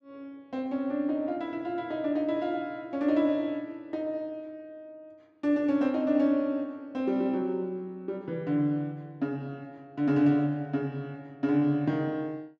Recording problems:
none

